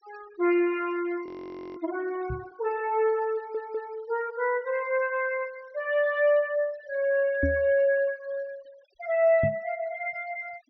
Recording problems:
treble missing; nothing above 5.9 kHz
denoising artefacts; signal-to-artefact ratio 25 dB
audio freezing; at 1.5 s for 0.5 s
microphone thump; at 2.5 s, at 7.5 s and at 9.5 s; peak +3 dB vs average level
audio stuttering; at 3.5 s

